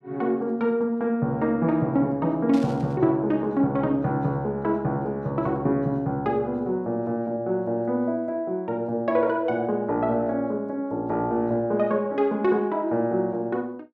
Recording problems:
burst of static; at 2.5 s; peak -13 dB vs average level

